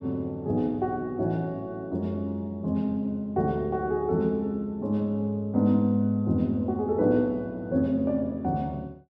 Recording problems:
none

